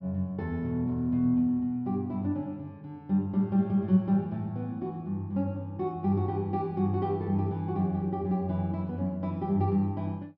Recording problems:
treble missing; nothing above 5.5 kHz

